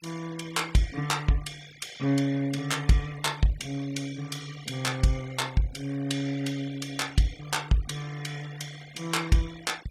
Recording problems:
denoising artefacts; signal-to-artefact ratio 19 dB

